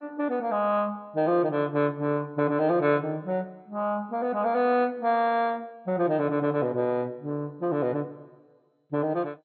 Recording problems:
lossy codec; MP2, log-spectral distance 2 dB, nothing above 3.9 kHz

